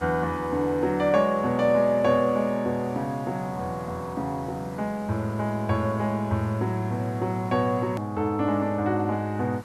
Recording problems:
hiss; slope -5 dB per octave, SNR 22 dB
edit click; at 8 s

